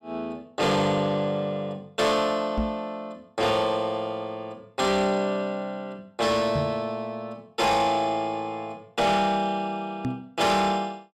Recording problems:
distorted audio; soft clipping, signal-to-distortion ratio 11 dB
microphone thump; at 2.5 s, at 6.5 s and at 10 s; peak +1 dB vs average level

